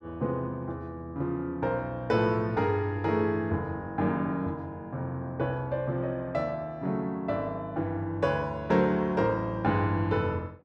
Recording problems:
none

